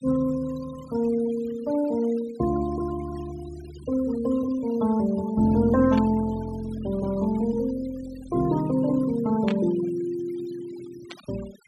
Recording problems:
denoising artefacts; signal-to-artefact ratio 19 dB
burst of static; at 6 s, at 9.5 s and at 11 s; peak -6 dB vs average level

